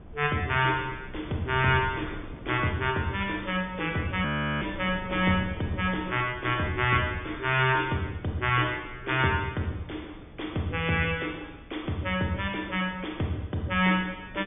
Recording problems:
treble missing; nothing above 3.6 kHz
wind noise; below 280 Hz, SNR 17 dB
audio freezing; at 4.5 s

